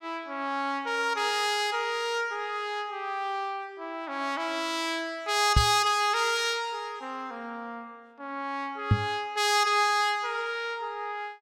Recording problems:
microphone bump; at 5.5 s and at 9 s; peak +9 dB vs average level

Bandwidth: 17 kHz